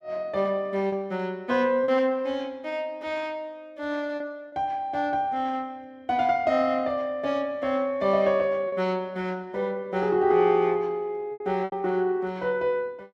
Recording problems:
lost packets; 3% of the sound replaced, filled with repeated pitch periods

